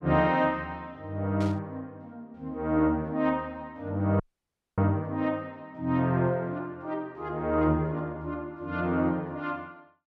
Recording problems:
static burst; at 1.5 s; peak -11 dB vs average level
audio cutting out; at 4 s for 0.5 s

